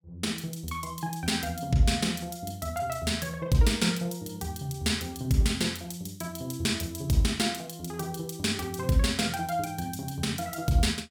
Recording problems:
none

